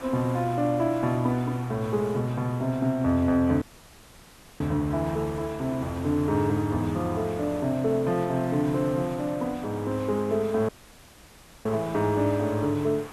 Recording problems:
hiss; SNR 17 dB
dropout; at 3.5 s for 1 s and at 11 s for 1 s

